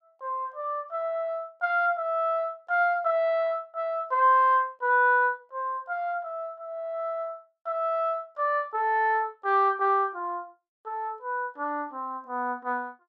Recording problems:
none

